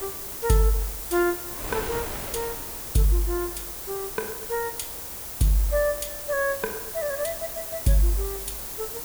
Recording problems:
hiss; SNR 5 dB
wind on the microphone; below 1.6 kHz, SNR 15 dB

